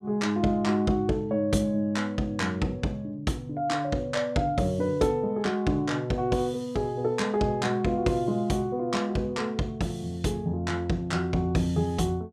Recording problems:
none

